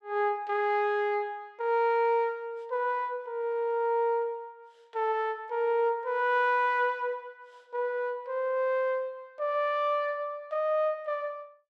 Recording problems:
none

